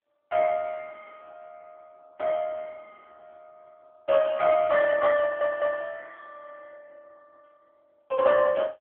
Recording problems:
telephone audio; 170 Hz to 3.3 kHz, AMR-NB
audio stuttering; at 5 s

